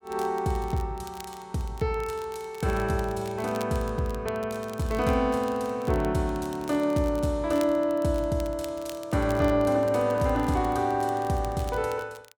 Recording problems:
crackling; vinyl, SNR 21 dB

